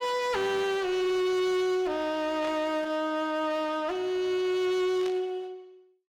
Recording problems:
distorted audio; hard clipping, uneven, signal-to-distortion ratio 10 dB
burst of static; at 2.5 s and at 5 s; peak -10 dB vs average level

